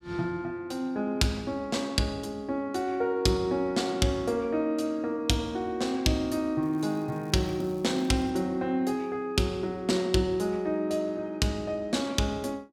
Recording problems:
crackle; from 6.5 to 8.5 s; loose cable, SNR 29 dB

